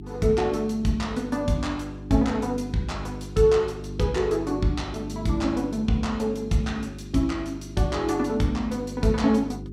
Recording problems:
hum; 50 Hz, harmonics up to 400 Hz, SNR 12 dB

